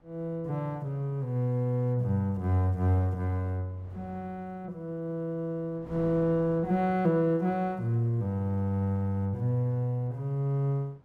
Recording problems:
wind on the microphone; below 540 Hz, SNR 25 dB

